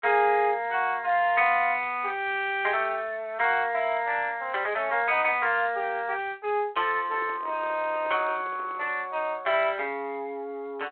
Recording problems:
phone line; 320 Hz to 3.3 kHz, G.726
microphone handling noise; from 7 to 9 s; peak -15 dB vs average level

